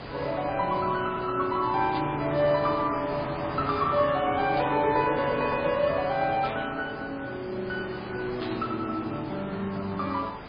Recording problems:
codec artefacts; MP3, log-spectral distance 11 dB, nothing above 4 kHz
background hiss; SNR 12 dB
burst of static; 4 times, first at 2 s; peak -8 dB vs average level

